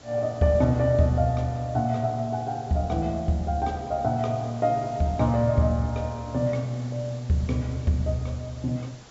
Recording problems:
treble missing; nothing above 8 kHz
background hiss; slope -3 dB per octave, SNR 23 dB

